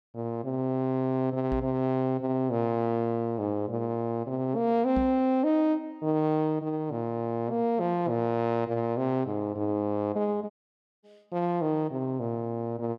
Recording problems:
microphone thump; at 1.5 s and at 5 s; peak -1 dB vs average level
dropout; at 11 s for 0.5 s

